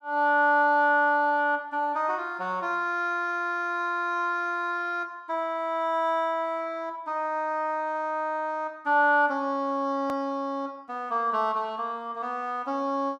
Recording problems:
hard cut with a click; at 10 s

